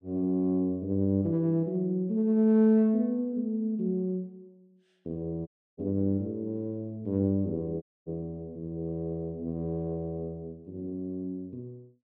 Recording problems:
dropout; at 5.5 s and at 8 s

